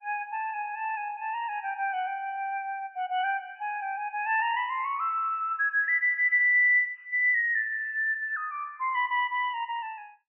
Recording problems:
lossy compression; MP3, log-spectral distance 2 dB, nothing above 2.7 kHz

